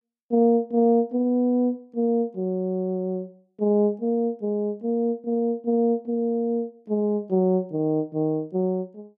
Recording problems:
none

